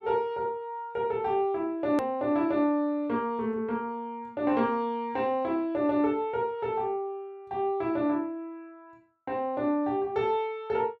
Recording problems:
edit click; at 2 s

